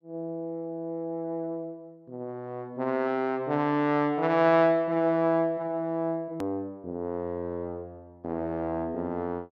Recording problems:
click at an edit; at 6.5 s

